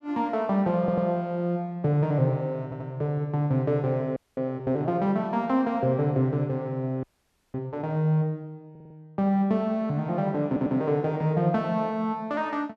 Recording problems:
audio stuttering; 4 times, first at 1 s
audio freezing; at 4 s and at 7 s for 0.5 s

